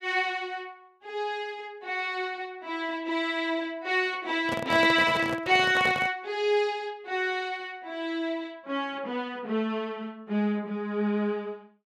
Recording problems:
handling noise; from 4.5 to 6 s; peak 0 dB vs average level

